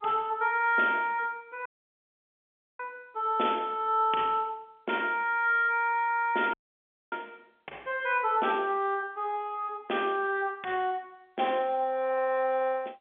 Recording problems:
phone line; 280 Hz to 3.8 kHz, G.711
audio cutting out; at 1.5 s for 1 s and at 6.5 s for 0.5 s

